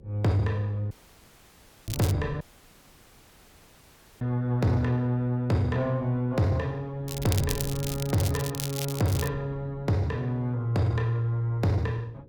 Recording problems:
distorted audio; soft clipping, signal-to-distortion ratio 12 dB
mains hum; 60 Hz, harmonics up to 540 Hz, SNR 28 dB
wind on the microphone; below 180 Hz, SNR 18 dB
dropout; at 1 s for 1 s and at 2.5 s for 2 s
crackling; at 2 s and from 7 to 9.5 s; loose cable, SNR 8 dB

